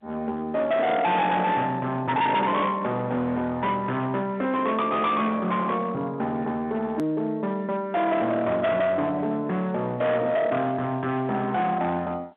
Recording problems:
phone line; 190 Hz to 3.7 kHz, G.711
distortion; hard clipping, uneven, signal-to-distortion ratio 8 dB
hard cut with a click; at 7 s

